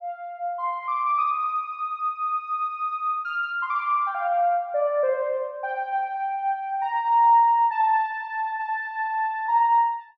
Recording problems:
none

